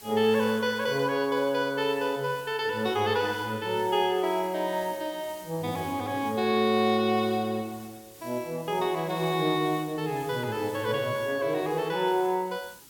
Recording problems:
background hiss; SNR 21 dB

